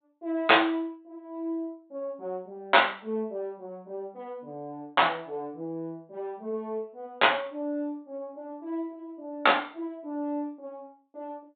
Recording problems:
treble missing; nothing above 4 kHz

